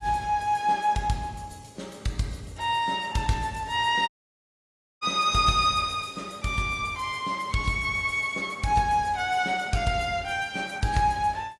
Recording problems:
codec artefacts; AAC, log-spectral distance 3 dB, nothing above 11.6 kHz
dropout; at 4 s for 1 s

